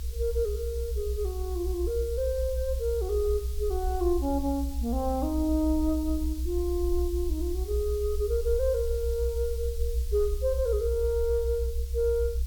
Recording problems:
hiss; slope +5 dB per octave, SNR 17 dB
low-frequency rumble; below 64 Hz, strongest tone 64 Hz, SNR 3 dB

